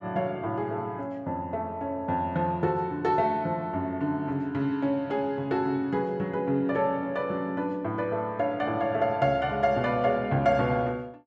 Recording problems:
none

